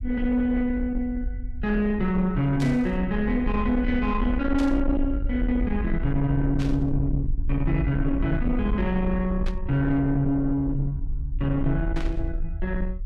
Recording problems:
distorted audio; soft clipping, signal-to-distortion ratio 11 dB
low-frequency rumble; below 66 Hz, SNR 6 dB
static burst; 5 times, first at 2.5 s; peak -10 dB vs average level

